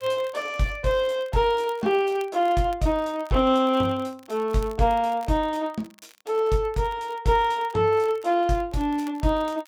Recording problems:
crackle; vinyl, SNR 28 dB

